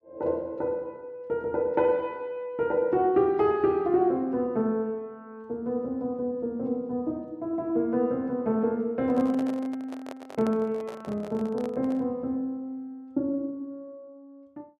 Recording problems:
microphone handling noise; from 9 to 12 s; peak -6 dB vs average level

